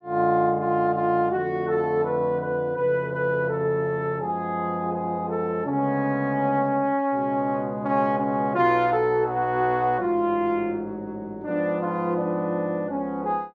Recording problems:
none

